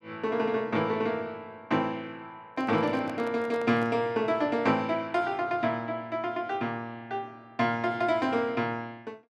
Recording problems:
microphone handling noise; from 2.5 to 4 s; peak -9 dB vs average level

